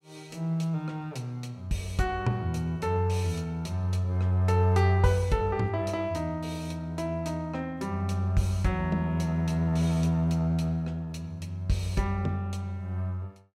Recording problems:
none

